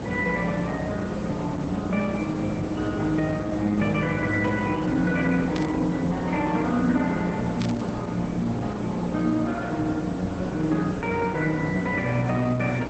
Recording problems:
lossy compression; Opus, log-spectral distance 3 dB
hum; 60 Hz, harmonics up to 300 Hz, SNR 9 dB
background hiss; slope -8 dB per octave, SNR 9 dB
burst of static; at 5.5 s and at 7.5 s; peak -5 dB vs average level

